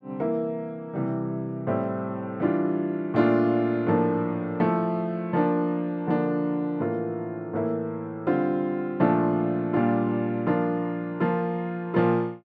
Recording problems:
none

